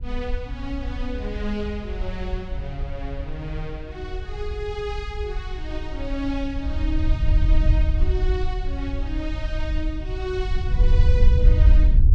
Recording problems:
wind noise; below 62 Hz, SNR -7 dB

